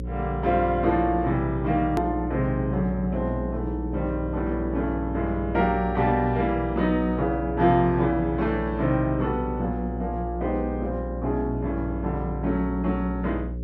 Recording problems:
hum; 60 Hz, harmonics up to 540 Hz, SNR 7 dB
edit click; at 2 s

